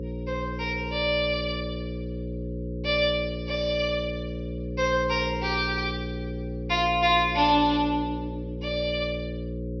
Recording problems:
treble cut off; nothing above 6.1 kHz
hum; 60 Hz, harmonics up to 540 Hz, SNR 7 dB

